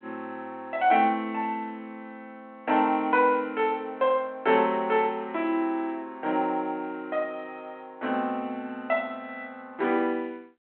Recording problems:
phone line; 280 Hz to 3.6 kHz, G.726

